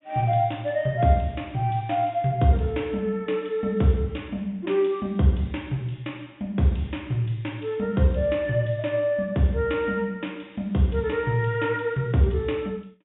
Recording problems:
low-pass filter; nothing above 3.7 kHz

